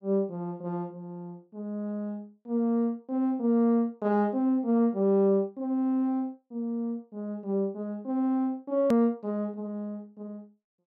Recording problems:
hard cut with a click; at 9 s

